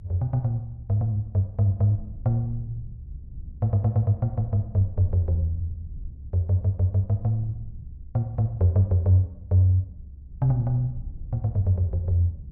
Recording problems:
low-frequency rumble; below 82 Hz, SNR 16 dB

